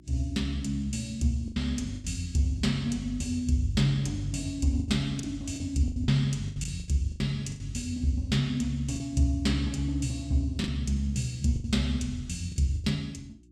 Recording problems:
electrical hum; 60 Hz, harmonics up to 360 Hz, SNR 27 dB
packet loss; 8% of the sound replaced, filled with the last packet

